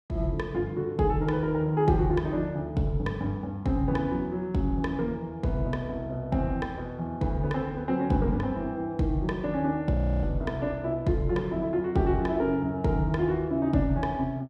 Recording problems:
frozen audio; at 10 s

